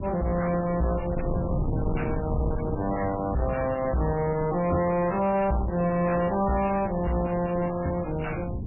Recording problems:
lossy compression; MP3, log-spectral distance 5 dB, nothing above 2.8 kHz
distorted audio; soft clipping, signal-to-distortion ratio 7 dB
wind on the microphone; below 250 Hz, SNR 7 dB

